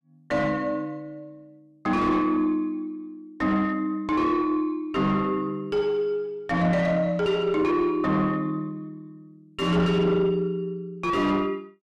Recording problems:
distorted audio; soft clipping, signal-to-distortion ratio 7 dB

